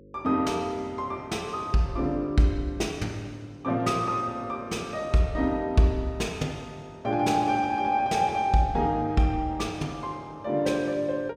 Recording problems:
hum; 50 Hz, harmonics up to 550 Hz, SNR 25 dB

